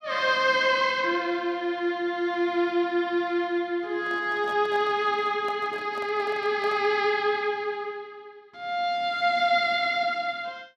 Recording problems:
microphone handling noise; from 4 to 7 s; peak -12 dB vs average level

